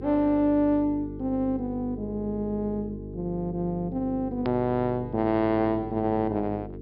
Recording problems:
low-pass filter; nothing above 5.5 kHz
hum; 50 Hz, harmonics up to 450 Hz, SNR 11 dB
edit click; at 4.5 s

